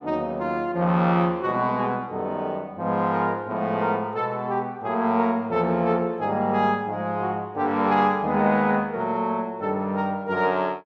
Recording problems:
none

